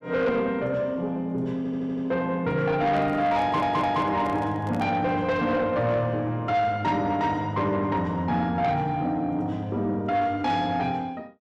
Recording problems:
distortion; soft clipping, signal-to-distortion ratio 12 dB
stutter; at 1.5 s and at 3.5 s
handling noise; from 3 to 5 s; peak -8 dB vs average level

